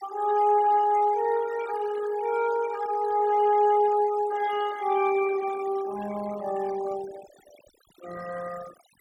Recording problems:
denoising artefacts; signal-to-artefact ratio 18 dB

